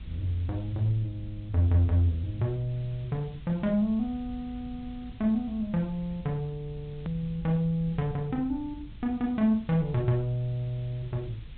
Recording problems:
treble cut off; nothing above 4 kHz
hiss; SNR 27 dB
rumble; below 110 Hz, SNR 16 dB
click at an edit; at 7 s

